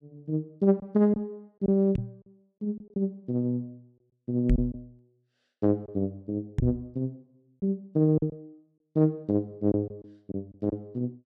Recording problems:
lost packets; 5% of the sound replaced, filled with silence
microphone bump; at 2 s, at 4.5 s and at 6.5 s; peak +6 dB vs average level

